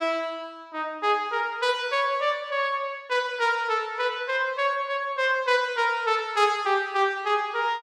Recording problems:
none

